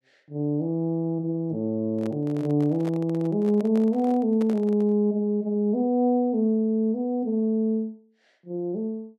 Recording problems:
handling noise; from 2 to 5 s; peak -9 dB vs average level

